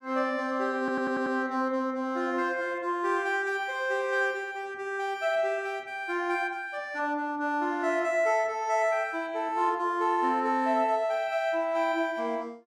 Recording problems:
stutter; at 1 s

